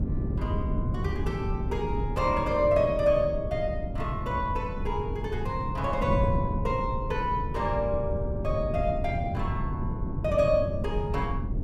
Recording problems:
wind noise; below 170 Hz, SNR 3 dB

